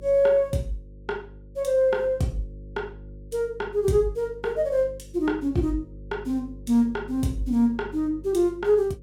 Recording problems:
hum; 50 Hz, harmonics up to 550 Hz, SNR 19 dB

